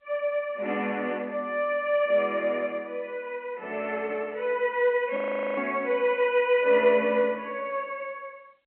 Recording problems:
telephone audio; 260 Hz to 3.2 kHz, G.711
frozen audio; at 5 s

